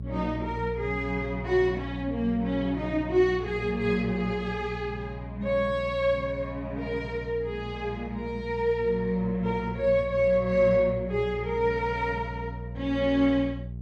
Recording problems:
hum; 60 Hz, harmonics up to 420 Hz, SNR 11 dB

